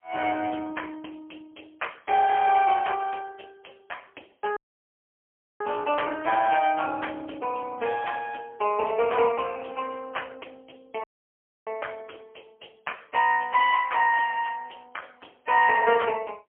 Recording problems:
telephone audio; 260 Hz to 3.2 kHz, AMR-NB, then MP3
audio cutting out; at 4.5 s for 1 s and at 11 s for 0.5 s

